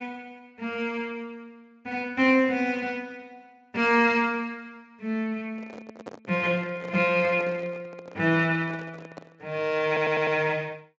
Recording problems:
codec artefacts; Speex, log-spectral distance 2 dB
handling noise; from 5.5 to 9.5 s; peak -8 dB vs average level
stutter; at 10 s

